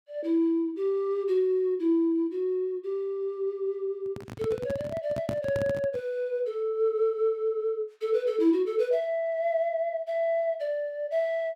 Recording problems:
handling noise; from 4 to 6 s; peak -1 dB vs average level

